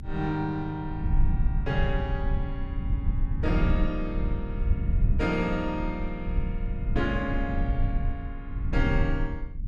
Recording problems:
rumble; below 82 Hz, SNR -1 dB

